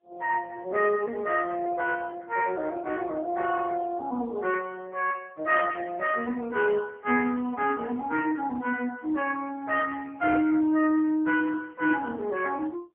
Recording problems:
phone line; 260 Hz to 2.5 kHz, AMR-NB, then MP3

